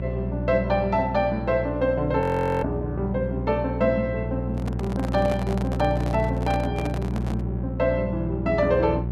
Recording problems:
hum; 60 Hz, harmonics up to 600 Hz, SNR 4 dB
audio freezing; at 2 s
microphone handling noise; from 4.5 to 7.5 s; peak -4 dB vs average level

